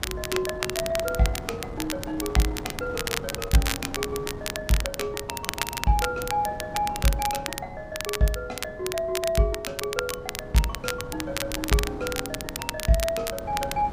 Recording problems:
wind noise; below 480 Hz, SNR 11 dB
crackling; vinyl, SNR 4 dB

